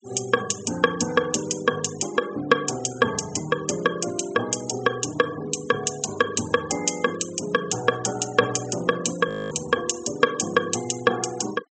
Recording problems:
low-pass filter; nothing above 8 kHz
noise reduction artefacts; signal-to-artefact ratio 17 dB
audio freezing; at 9.5 s

